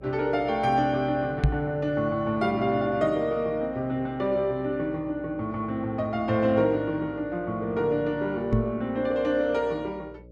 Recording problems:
hum; 60 Hz, harmonics up to 600 Hz, SNR 23 dB
microphone thump; at 1.5 s and at 8.5 s; peak +6 dB vs average level

